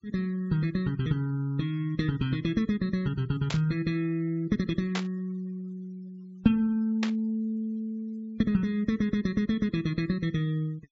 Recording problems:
low-pass filter; nothing above 8 kHz
denoising artefacts; signal-to-artefact ratio 27 dB
static burst; at 3.5 s, at 5 s and at 7 s; peak 0 dB vs average level

